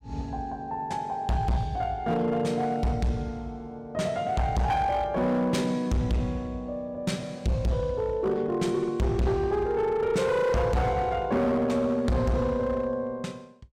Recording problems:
distorted audio; hard clipping, uneven, signal-to-distortion ratio 7 dB

